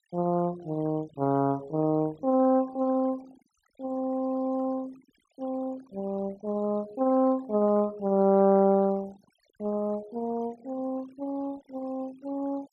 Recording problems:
denoising artefacts; signal-to-artefact ratio 25 dB

